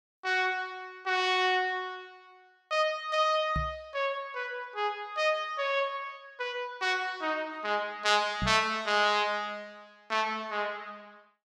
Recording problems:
microphone bump; at 3.5 s and at 8.5 s; peak 0 dB vs average level

